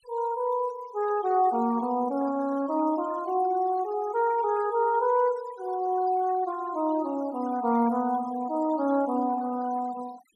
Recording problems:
noise reduction artefacts; signal-to-artefact ratio 20 dB

